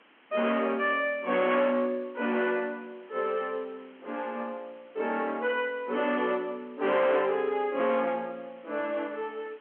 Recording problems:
telephone audio; 240 Hz to 3.3 kHz, G.711
distorted audio; hard clipping, uneven, signal-to-distortion ratio 11 dB
background hiss; SNR 28 dB

